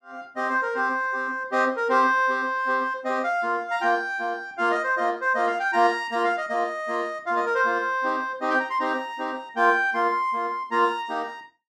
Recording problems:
none

